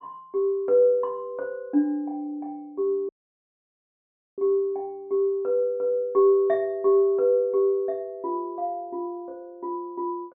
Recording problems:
audio cutting out; at 3 s for 1.5 s

